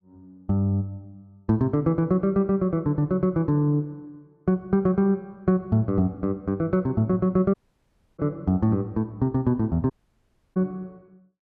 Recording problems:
audio cutting out; at 7.5 s for 0.5 s and at 10 s for 0.5 s

